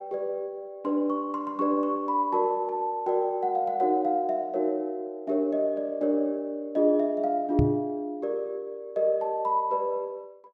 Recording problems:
microphone bump; at 7.5 s; peak +6 dB vs average level

